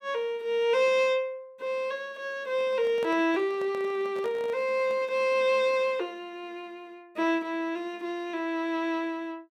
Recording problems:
handling noise; from 2.5 to 5 s; peak -8 dB vs average level

